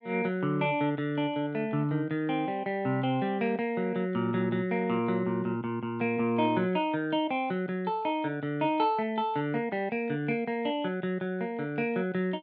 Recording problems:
none

